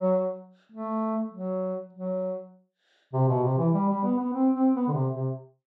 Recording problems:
none

